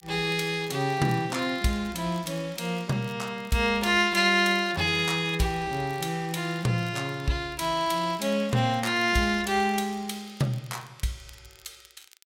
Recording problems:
crackle; vinyl, SNR 27 dB

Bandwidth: 16 kHz